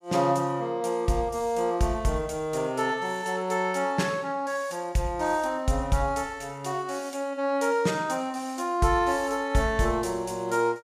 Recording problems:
none

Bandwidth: 14.5 kHz